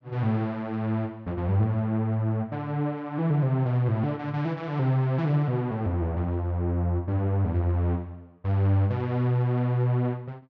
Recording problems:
none

